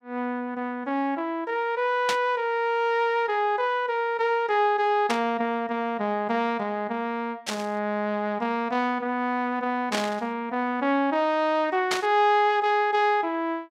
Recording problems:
static burst; 5 times, first at 2 s; peak +2 dB vs average level

